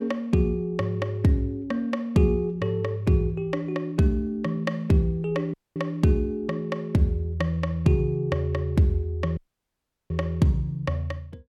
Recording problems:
audio cutting out; at 5.5 s and at 9.5 s for 0.5 s

